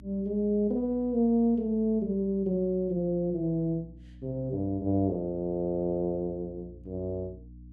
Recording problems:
hum; 60 Hz, harmonics up to 300 Hz, SNR 20 dB

